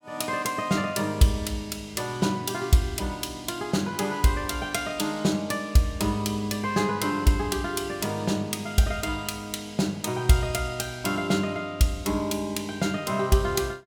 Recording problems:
none

